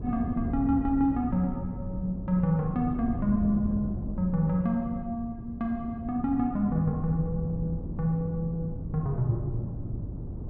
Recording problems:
wind noise; below 190 Hz, SNR 7 dB

